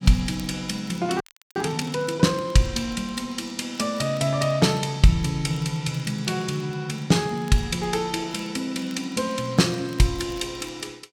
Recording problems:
crackling; vinyl, SNR 27 dB
frozen audio; at 1 s

